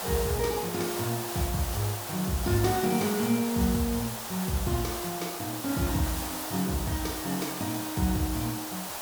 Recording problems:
background hiss; SNR 4 dB

